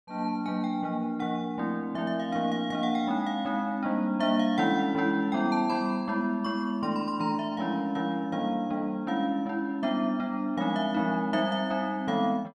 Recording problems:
none

